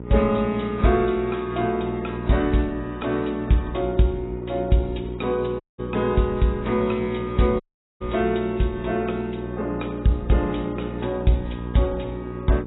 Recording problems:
lossy compression; AAC, log-spectral distance 3 dB, nothing above 3.8 kHz
hum; 60 Hz, harmonics up to 1 kHz, SNR 10 dB
audio cutting out; at 5.5 s and at 7.5 s

